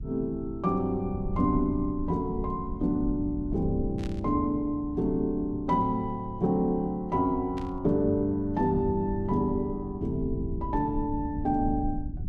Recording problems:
rumble; below 120 Hz, SNR 10 dB
burst of static; at 4 s and at 7.5 s; peak -13 dB vs average level

